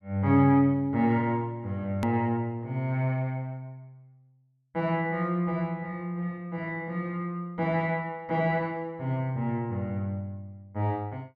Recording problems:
click at an edit; at 2 s

